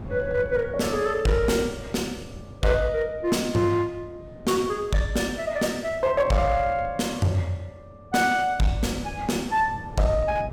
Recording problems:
distortion; hard clipping, uneven, signal-to-distortion ratio 11 dB
wind on the microphone; below 260 Hz, SNR 17 dB

